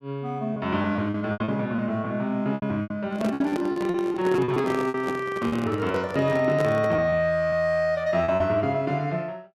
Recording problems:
packet loss; 10% of the sound replaced, filled with repeated pitch periods
handling noise; from 3 to 7 s; peak -1 dB vs average level

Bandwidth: 13.5 kHz